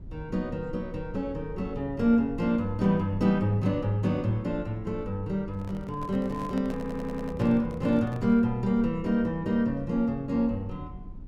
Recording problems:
low-frequency rumble; below 86 Hz, SNR 17 dB
microphone handling noise; from 5.5 to 8.5 s; peak -9 dB vs average level
stutter; at 7 s

